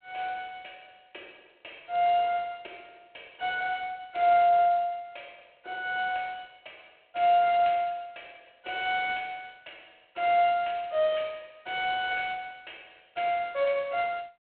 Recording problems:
phone line; 280 Hz to 3.4 kHz, G.726

